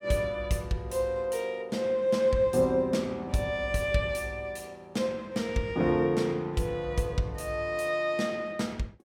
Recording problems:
none

